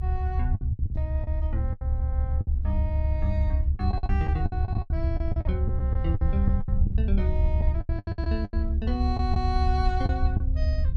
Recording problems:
low-frequency rumble; below 76 Hz, SNR -7 dB
wind on the microphone; below 100 Hz, SNR 9 dB
packet loss; 13% of the sound replaced, filled with the last packet

